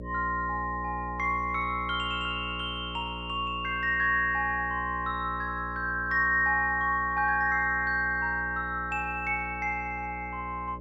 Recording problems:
hum; 60 Hz, harmonics up to 600 Hz, SNR 13 dB

